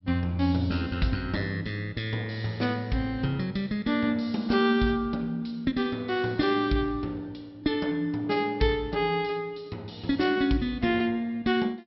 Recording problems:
treble missing; nothing above 5.5 kHz

